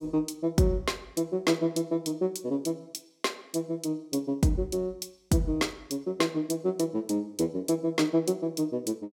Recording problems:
none

